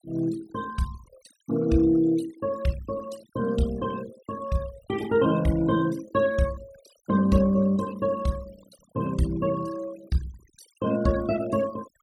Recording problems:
noise reduction artefacts; signal-to-artefact ratio 20 dB

